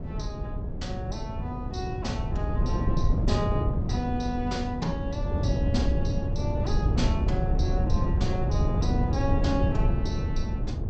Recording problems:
low-pass filter; nothing above 8 kHz
wind noise; below 150 Hz, SNR -6 dB

